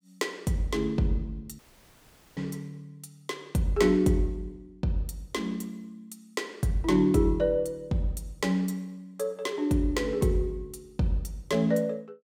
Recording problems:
audio cutting out; at 1.5 s for 1 s

